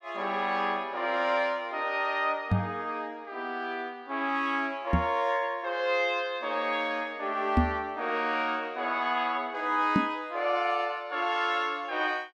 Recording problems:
knock on the microphone; 4 times, first at 2.5 s; peak +8 dB vs average level

